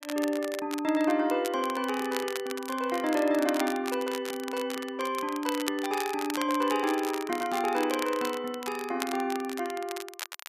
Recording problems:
crackle; vinyl, SNR 10 dB

